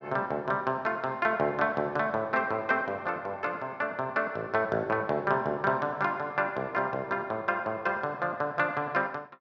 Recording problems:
none

